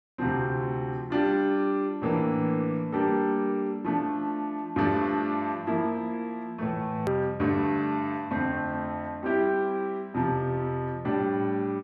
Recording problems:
click at an edit; at 7 s

